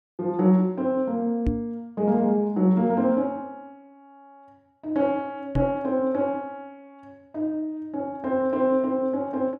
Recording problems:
microphone thump; at 1.5 s and at 5.5 s; peak +3 dB vs average level

